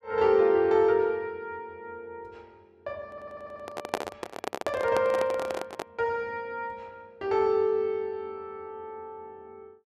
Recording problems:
stutter; at 3 s
microphone handling noise; from 3 to 6 s; peak +3 dB vs average level

